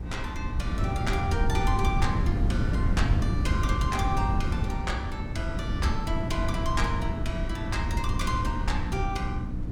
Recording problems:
electrical hum; 60 Hz, harmonics up to 300 Hz, SNR 7 dB
wind on the microphone; below 120 Hz, SNR -3 dB

